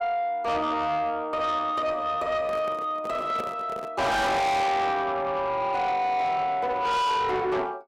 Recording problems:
distortion; soft clipping, signal-to-distortion ratio 6 dB
handling noise; from 2.5 to 4 s; peak -5 dB vs average level

